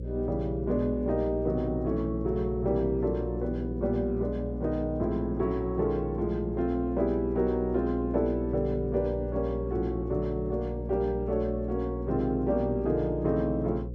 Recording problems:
hum; 60 Hz, harmonics up to 540 Hz, SNR 7 dB

